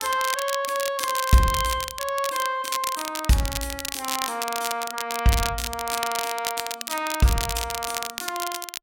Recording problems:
crackling; vinyl, SNR 4 dB

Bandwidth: 16.5 kHz